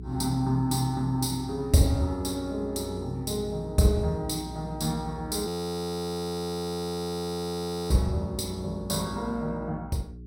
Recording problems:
hum; 60 Hz, harmonics up to 420 Hz, SNR 14 dB
frozen audio; at 5.5 s for 2.5 s

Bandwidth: 16.5 kHz